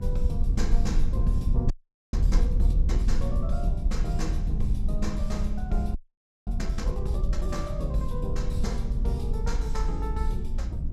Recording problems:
hum; 50 Hz, harmonics up to 600 Hz, SNR 13 dB
rumble; below 56 Hz, SNR -5 dB
audio freezing; at 1.5 s and at 6 s for 0.5 s

